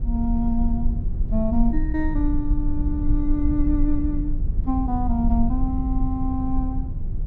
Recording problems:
rumble; below 62 Hz, SNR 0 dB

